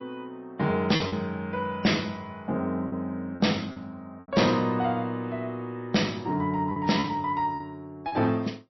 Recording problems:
lossy compression; MP3, log-spectral distance 2 dB, nothing above 5.7 kHz
distortion; soft clipping, signal-to-distortion ratio 12 dB
lost packets; 5% of the sound replaced, filled with repeated pitch periods

